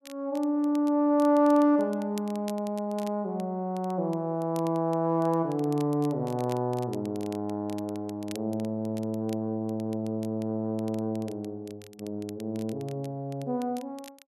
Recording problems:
crackling; vinyl, SNR 23 dB

